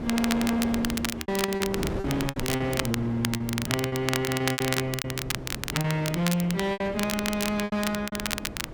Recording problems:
distorted audio; hard clipping, signal-to-distortion ratio 8 dB
wind noise; below 470 Hz, SNR 9 dB
crackling; vinyl, SNR 4 dB
packet loss; 13% of the sound replaced, filled with repeated pitch periods

